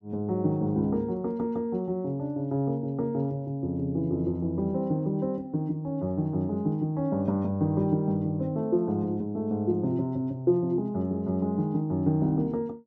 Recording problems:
none

